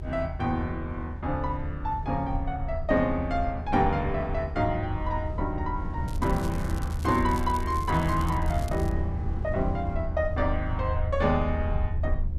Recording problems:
low-frequency rumble; below 78 Hz, SNR 4 dB
wind on the microphone; below 170 Hz, SNR 11 dB
crackle; from 6 to 9 s; loose cable, SNR 18 dB

